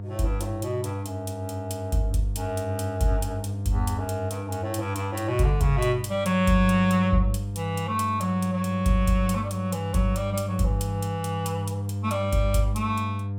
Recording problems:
electrical hum; 50 Hz, harmonics up to 700 Hz, SNR 6 dB

